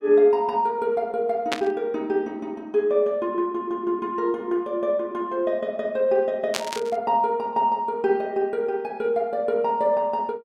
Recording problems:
static burst; at 1.5 s and at 6.5 s; peak +3 dB vs average level

